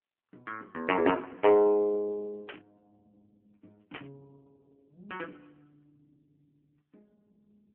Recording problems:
phone line; 240 Hz to 3.1 kHz, AMR-NB
static burst; at 2.5 s and at 4 s; peak -11 dB vs average level

